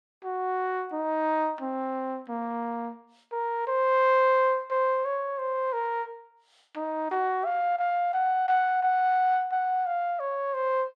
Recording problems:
none

